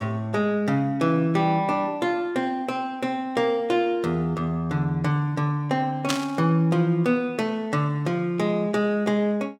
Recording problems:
static burst; at 6 s; peak +3 dB vs average level

